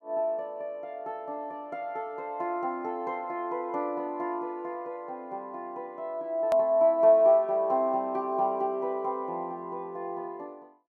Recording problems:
edit click; at 6.5 s

